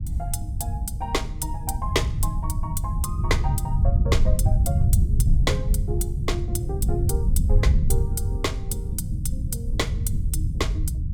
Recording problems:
low-frequency rumble; below 98 Hz, SNR -5 dB

